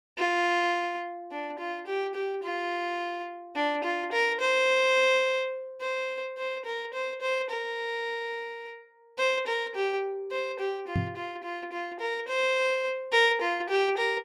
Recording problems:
microphone thump; at 11 s; peak +3 dB vs average level

